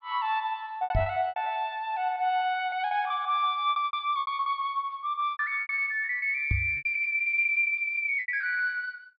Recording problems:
low-pass filter; nothing above 5.5 kHz
lost packets; 16% of the sound replaced, filled with repeated pitch periods
knock on the microphone; at 1 s and at 6.5 s; peak +2 dB vs average level

